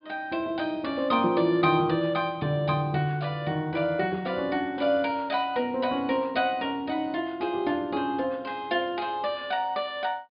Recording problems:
low-pass filter; nothing above 4.9 kHz

